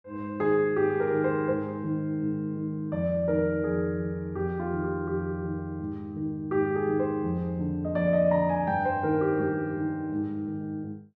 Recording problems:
none

